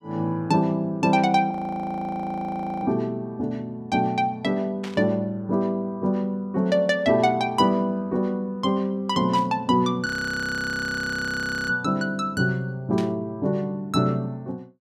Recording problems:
audio freezing; at 1.5 s for 1.5 s and at 10 s for 1.5 s
static burst; at 5 s, at 9.5 s and at 13 s; peak -8 dB vs average level

